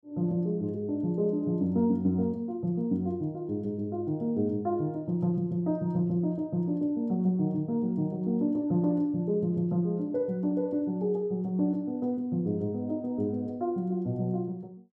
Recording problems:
none

